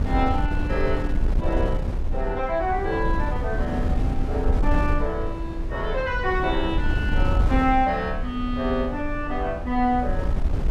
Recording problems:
wind on the microphone; below 82 Hz, SNR 1 dB

